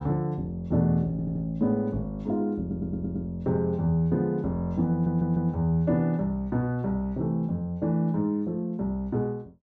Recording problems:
stutter; at 1 s, at 2.5 s and at 5 s

